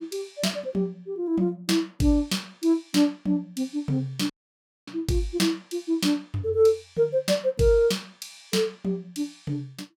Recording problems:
audio cutting out; at 4.5 s for 0.5 s

